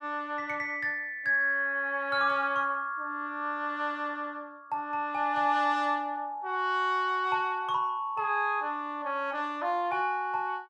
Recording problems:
none

